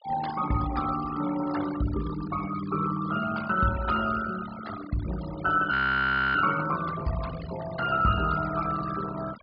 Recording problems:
treble missing; nothing above 5.1 kHz
noise reduction artefacts; signal-to-artefact ratio 13 dB
audio freezing; at 5.5 s for 0.5 s

